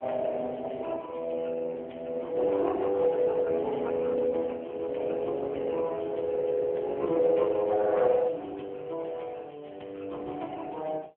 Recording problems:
telephone audio; 260 Hz to 3.3 kHz, AMR-NB

